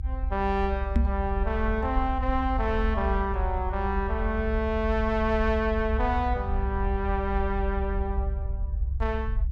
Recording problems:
low-frequency rumble; below 66 Hz, SNR 2 dB
microphone thump; at 1 s; peak +7 dB vs average level

